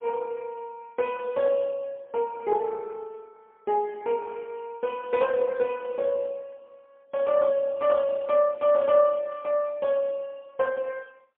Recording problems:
telephone audio; 190 Hz to 3 kHz, AMR-NB, then MP3

